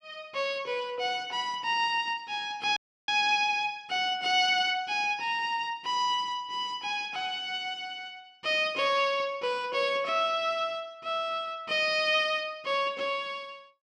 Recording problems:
audio cutting out; at 3 s

